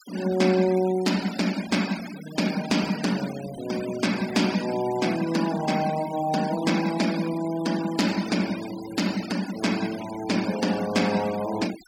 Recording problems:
noise reduction artefacts; signal-to-artefact ratio 13 dB

